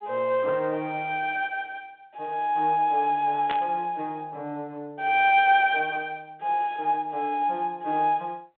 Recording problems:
phone line; 260 Hz to 3.9 kHz, G.726
burst of static; at 3.5 s; peak -3 dB vs average level

